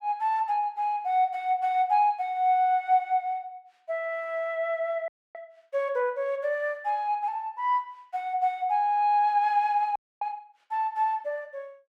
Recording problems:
frozen audio; at 5 s and at 10 s

